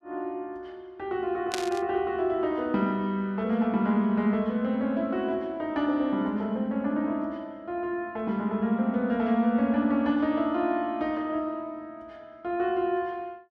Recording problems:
burst of static; at 1.5 s; peak 0 dB vs average level

